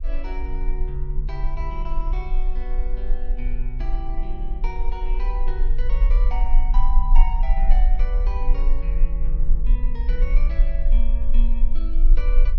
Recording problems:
low-frequency rumble; below 36 Hz, strongest tone 22 Hz, SNR -12 dB

